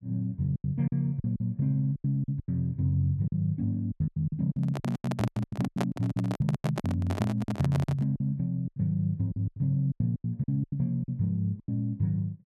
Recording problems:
packet loss; 16% of the sound replaced, filled with silence
microphone handling noise; from 4.5 to 8 s; peak +2 dB vs average level

